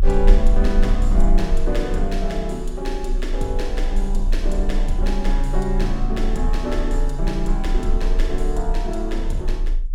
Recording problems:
rumble; below 32 Hz, strongest tone 28 Hz, SNR -2 dB

